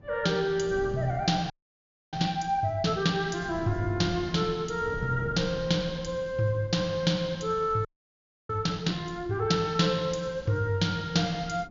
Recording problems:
low-pass filter; nothing above 7.2 kHz
wind on the microphone; below 240 Hz, SNR 16 dB
audio freezing; at 1.5 s for 0.5 s and at 8 s for 0.5 s

